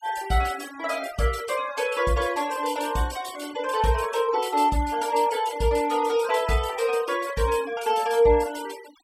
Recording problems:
denoising artefacts; signal-to-artefact ratio 17 dB

